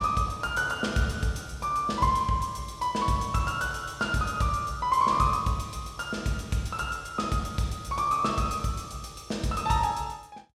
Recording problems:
none

